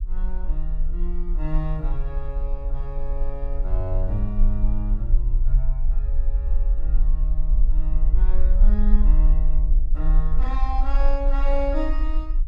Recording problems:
low-frequency rumble; below 40 Hz, strongest tone 22 Hz, SNR -8 dB

